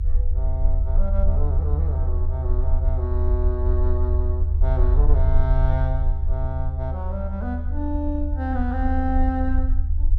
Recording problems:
low-frequency rumble; below 76 Hz, SNR -7 dB

